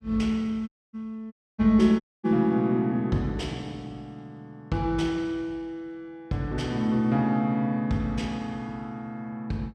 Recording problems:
audio cutting out; at 0.5 s, at 1.5 s and at 2 s

